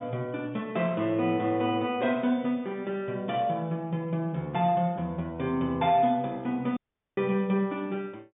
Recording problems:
low-pass filter; nothing above 3.6 kHz
audio cutting out; at 7 s

